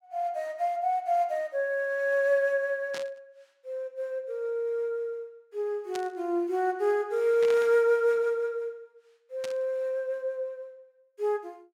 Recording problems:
static burst; 4 times, first at 3 s; peak -7 dB vs average level

